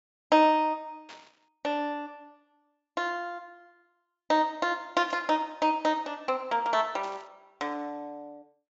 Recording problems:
treble missing; nothing above 8 kHz
burst of static; at 1 s, at 5 s and at 7 s; peak -14 dB vs average level

